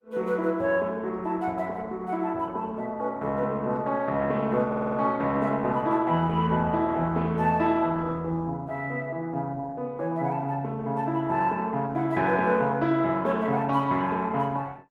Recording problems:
codec artefacts; Opus, log-spectral distance 2 dB
audio stuttering; at 4.5 s

